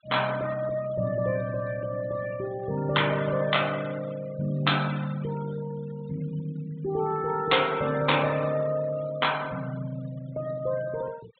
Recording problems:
low-pass filter; nothing above 4 kHz
noise reduction artefacts; signal-to-artefact ratio 19 dB

